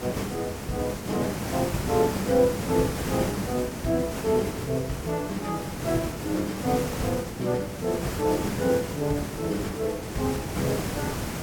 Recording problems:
hiss; slope -5 dB per octave, SNR 4 dB

